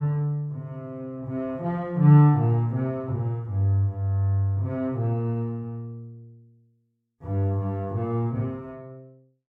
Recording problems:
none

